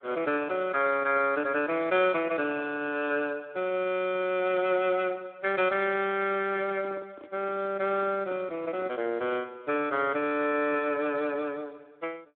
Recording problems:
phone line; 220 Hz to 3.5 kHz, Speex
microphone handling noise; from 6.5 to 9 s; peak -10 dB vs average level

